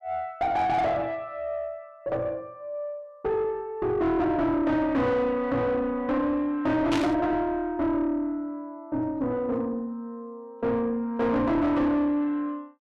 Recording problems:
distorted audio; soft clipping, signal-to-distortion ratio 6 dB
static burst; at 7 s; peak -1 dB vs average level

